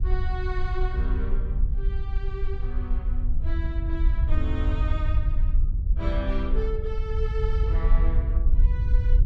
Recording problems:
low-frequency rumble; below 62 Hz, SNR -9 dB

